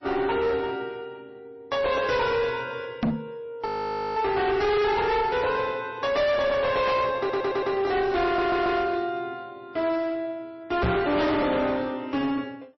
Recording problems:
lossy compression; MP3, log-spectral distance 2 dB, nothing above 5.8 kHz
distortion; hard clipping, uneven, signal-to-distortion ratio 6 dB
microphone thump; at 3 s and at 11 s; peak +5 dB vs average level
frozen audio; at 3.5 s for 0.5 s
audio stuttering; at 7 s and at 8.5 s

